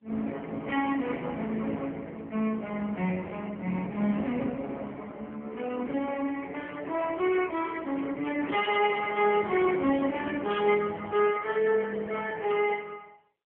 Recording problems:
phone line; 220 Hz to 3.2 kHz, AMR-NB

